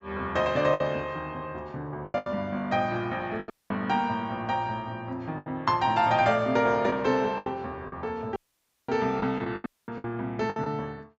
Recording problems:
treble cut off; nothing above 8 kHz
lost packets; 7% of the sound replaced, filled with the last packet
dropout; at 3.5 s, at 8.5 s for 0.5 s and at 9.5 s

